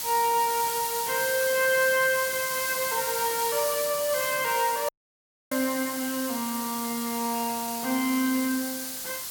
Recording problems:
hiss; slope +2 dB per octave, SNR 4 dB
static burst; at 2 s; peak -14 dB vs average level
dropout; at 5 s for 0.5 s

